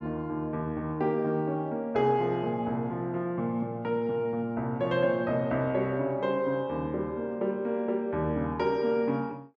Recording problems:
none

